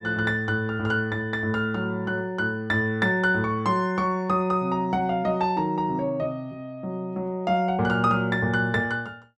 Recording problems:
none

